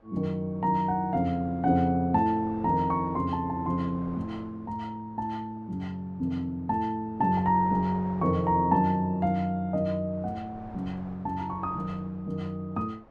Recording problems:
wind noise; below 930 Hz, SNR 23 dB

